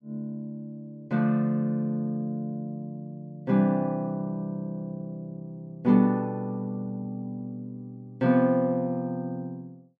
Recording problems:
none

